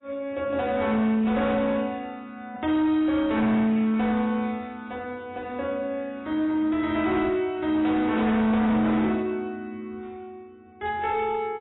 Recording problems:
lossy compression; AAC, log-spectral distance 2 dB, nothing above 3.8 kHz
distortion; hard clipping, uneven, signal-to-distortion ratio 12 dB

